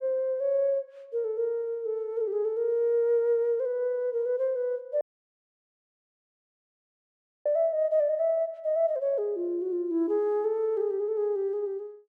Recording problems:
audio cutting out; at 5 s for 2.5 s

